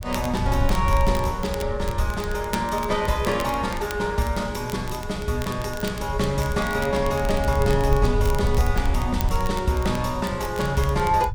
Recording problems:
rumble; below 84 Hz, SNR 6 dB
crackling; vinyl, SNR 16 dB

